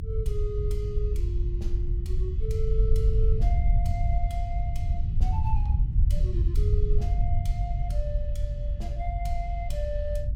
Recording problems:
low-frequency rumble; below 74 Hz, SNR -10 dB

